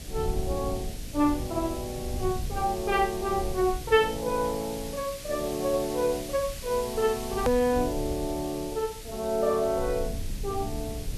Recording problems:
electrical hum; 60 Hz, harmonics up to 720 Hz, SNR 23 dB
background hiss; SNR 13 dB
rumble; below 110 Hz, SNR 11 dB
edit click; at 7.5 s

